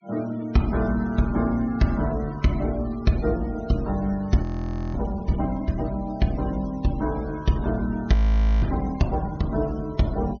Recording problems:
treble cut off; nothing above 6.5 kHz
noise reduction artefacts; signal-to-artefact ratio 22 dB
audio freezing; at 4.5 s for 0.5 s and at 8 s

